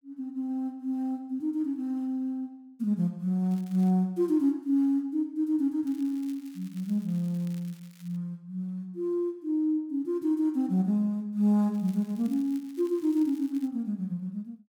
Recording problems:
crackling; at 3.5 s, from 6 to 8 s and from 12 to 14 s; loose cable, SNR 27 dB

